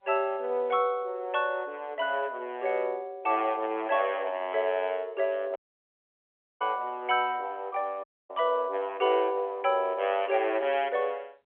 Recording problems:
phone line; 340 Hz to 3.4 kHz, G.711
dropout; at 5.5 s for 1 s and at 8 s

